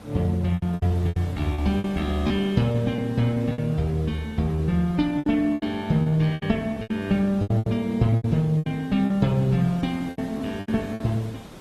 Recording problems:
lossy codec; Opus, log-spectral distance 2 dB
background hiss; slope -6 dB per octave, SNR 19 dB
packet loss; 15% of the sound replaced, filled with repeated pitch periods

